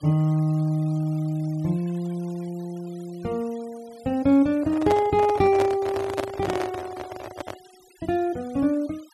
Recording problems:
noise reduction artefacts; signal-to-artefact ratio 24 dB
microphone handling noise; from 4.5 to 7.5 s; peak +1 dB vs average level

